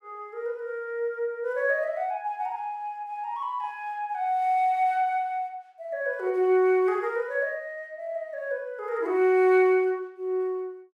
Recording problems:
none

